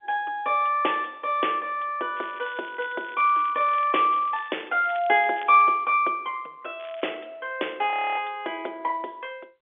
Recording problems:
telephone audio; 300 Hz to 3.5 kHz, G.711
crackling; from 2 to 5.5 s and at 7 s; loose cable, SNR 23 dB
frozen audio; at 8 s

